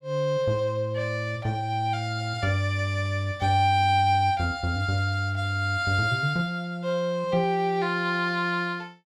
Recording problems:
none

